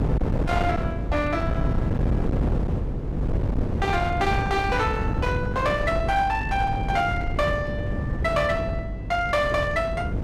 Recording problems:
distorted audio; hard clipping, uneven, signal-to-distortion ratio 10 dB
hum; 50 Hz, harmonics up to 300 Hz, SNR 10 dB
wind on the microphone; below 260 Hz, SNR 3 dB

